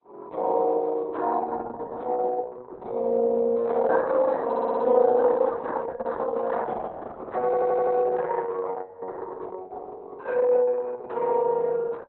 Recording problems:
codec artefacts; Opus, log-spectral distance 3 dB, nothing above 4 kHz
audio stuttering; at 4.5 s and at 7.5 s

